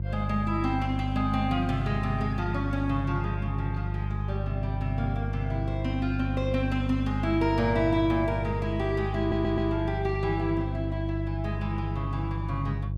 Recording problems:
hum; 50 Hz, harmonics up to 350 Hz, SNR 2 dB
stutter; at 9 s

